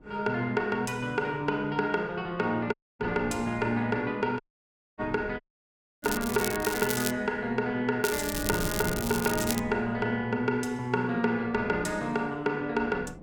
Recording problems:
wind noise; below 320 Hz, SNR 15 dB
audio cutting out; at 2.5 s, at 4.5 s for 0.5 s and at 5.5 s for 0.5 s
crackle; from 6 to 7 s and from 8 to 9.5 s; loose cable, SNR 5 dB

